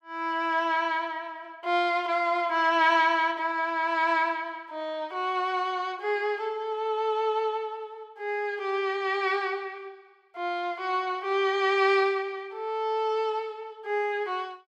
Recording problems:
none

